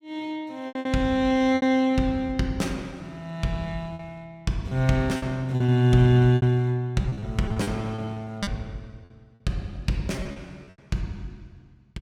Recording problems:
packet loss; 9% of the sound replaced, filled with repeated pitch periods

